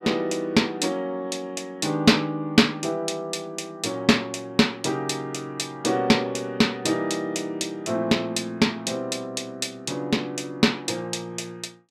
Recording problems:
none

